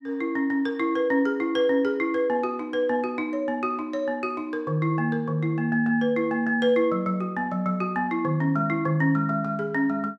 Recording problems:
none

